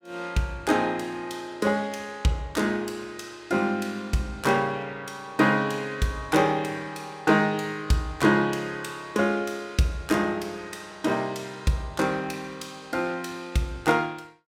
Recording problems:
none

